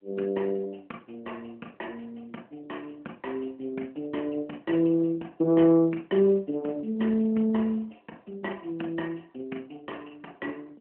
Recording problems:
telephone audio; 190 Hz to 3.1 kHz, AMR-NB

